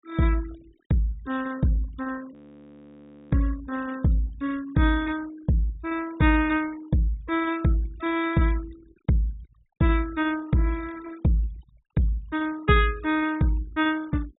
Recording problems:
treble missing; nothing above 4 kHz
noise reduction artefacts; signal-to-artefact ratio 21 dB
frozen audio; at 2.5 s for 1 s

